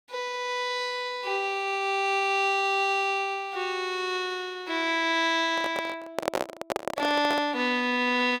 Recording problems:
microphone handling noise; from 5.5 to 7.5 s; peak +3 dB vs average level

